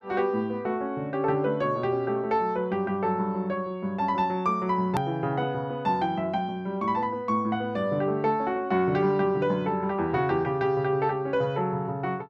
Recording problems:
hard cut with a click; at 5 s

